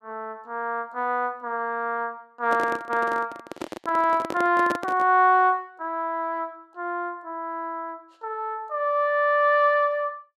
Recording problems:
handling noise; from 2.5 to 5 s; peak -1 dB vs average level

